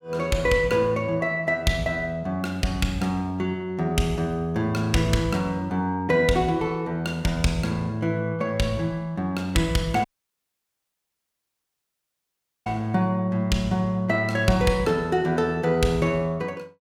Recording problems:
dropout; at 10 s for 2.5 s

